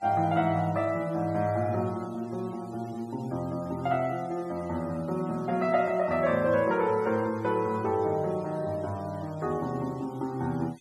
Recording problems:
denoising artefacts; signal-to-artefact ratio 24 dB

